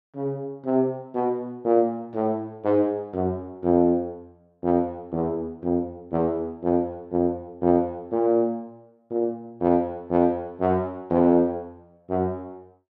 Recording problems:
none

